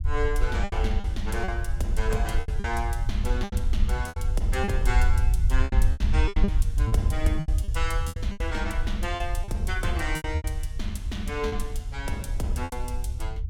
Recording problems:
low-frequency rumble; below 68 Hz, SNR -4 dB
lost packets; 11% of the sound replaced, filled with repeated pitch periods

